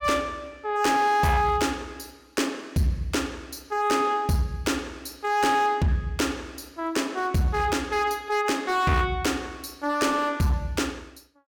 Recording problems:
distortion; hard clipping, signal-to-distortion ratio 11 dB

